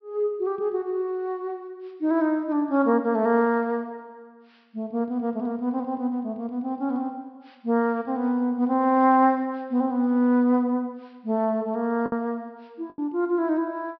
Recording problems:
low-pass filter; nothing above 5.5 kHz
lost packets; 1.1% of the sound replaced, filled with the last packet

